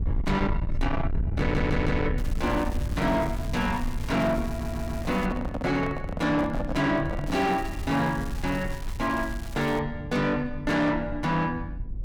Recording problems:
distorted audio; soft clipping, signal-to-distortion ratio 7 dB
low-frequency rumble; below 120 Hz, SNR 6 dB
stutter; at 1.5 s and at 4.5 s
crackle; from 2 to 5.5 s and from 7.5 to 10 s; loose cable, SNR 18 dB
handling noise; from 4.5 to 7.5 s; peak 0 dB vs average level

